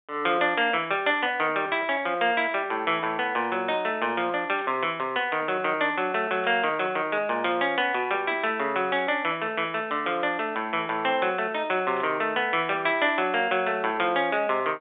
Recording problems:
phone line; 280 Hz to 3.6 kHz, G.711
static burst; 5 times, first at 2.5 s; peak -13 dB vs average level

